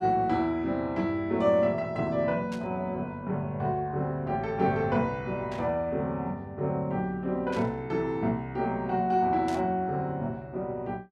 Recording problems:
static burst; 4 times, first at 2.5 s; peak -9 dB vs average level

